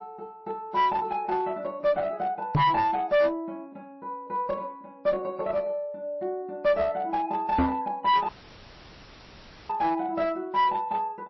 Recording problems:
codec artefacts; MP3, log-spectral distance 3 dB, nothing above 5.7 kHz
distortion; hard clipping, uneven, signal-to-distortion ratio 9 dB
microphone thump; at 2.5 s and at 7.5 s; peak +6 dB vs average level
dropout; at 8.5 s for 1.5 s

